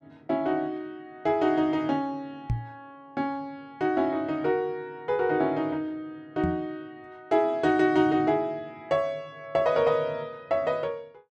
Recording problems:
microphone bump; at 2.5 s and at 6.5 s; peak +3 dB vs average level

